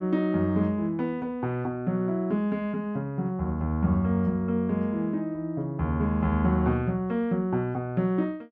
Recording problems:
none

